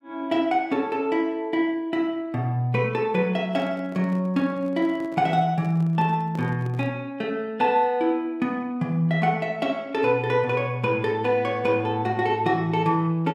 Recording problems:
microphone handling noise; from 3.5 to 7 s; peak -11 dB vs average level

